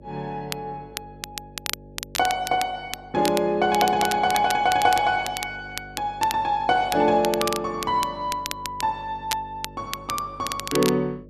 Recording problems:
hum; 50 Hz, harmonics up to 600 Hz, SNR 21 dB
crackling; vinyl, SNR 9 dB

